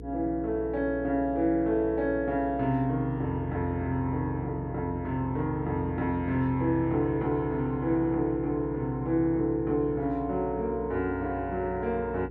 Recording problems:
hum; 60 Hz, harmonics up to 480 Hz, SNR 13 dB

